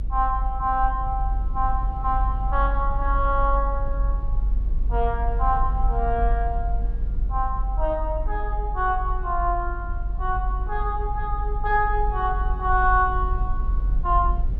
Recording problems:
low-frequency rumble; below 48 Hz, strongest tone 46 Hz, SNR 2 dB

